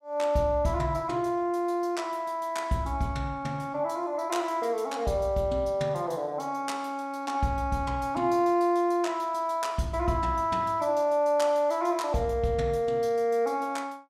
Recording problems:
none

